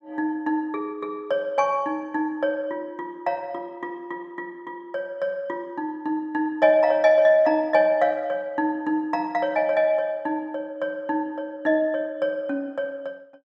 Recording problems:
none

